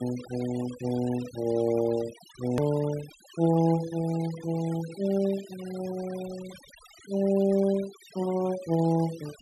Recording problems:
noise reduction artefacts; signal-to-artefact ratio 18 dB
hard cut with a click; at 2.5 s

